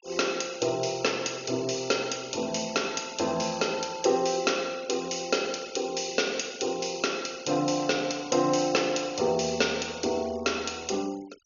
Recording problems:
treble cut off; nothing above 6.8 kHz
denoising artefacts; signal-to-artefact ratio 21 dB

